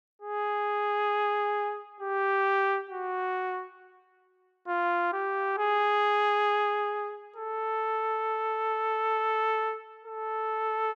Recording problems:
none

